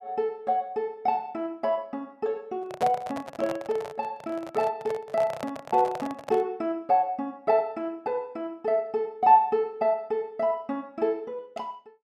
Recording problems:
handling noise; from 2.5 to 6.5 s; peak -1 dB vs average level

